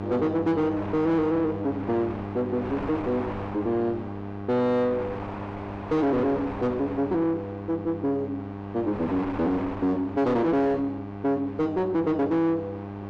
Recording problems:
distorted audio; soft clipping, signal-to-distortion ratio 8 dB
hum; 50 Hz, harmonics up to 1.6 kHz, SNR 11 dB
wind noise; below 1.2 kHz, SNR 13 dB

